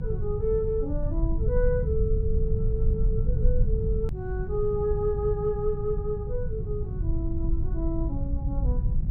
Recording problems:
hum; 50 Hz, harmonics up to 550 Hz, SNR 9 dB
rumble; below 80 Hz, SNR -2 dB
edit click; at 4 s

